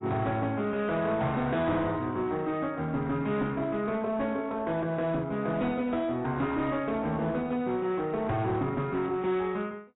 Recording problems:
codec artefacts; AAC, log-spectral distance 2 dB, nothing above 3.8 kHz
distorted audio; hard clipping, uneven, signal-to-distortion ratio 11 dB

